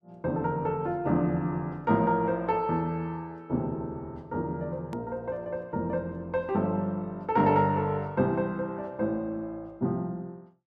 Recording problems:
edit click; at 5 s

